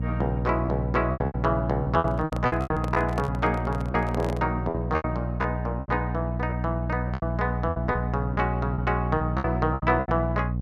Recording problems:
electrical hum; 60 Hz, harmonics up to 540 Hz, SNR 2 dB
lost packets; 13% of the sound replaced, filled with repeated pitch periods
microphone handling noise; from 2 to 4.5 s; peak -1 dB vs average level

